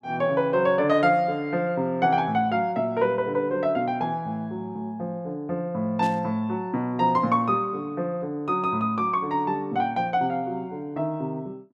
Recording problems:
burst of static; at 6 s; peak -13 dB vs average level

